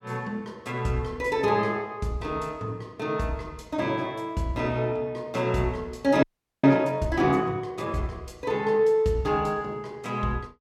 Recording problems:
frozen audio; at 6 s

